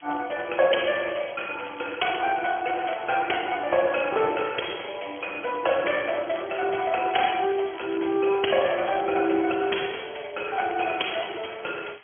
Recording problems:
phone line; 300 Hz to 3.3 kHz, Speex
background hiss; SNR 26 dB
crackling; vinyl, SNR 27 dB

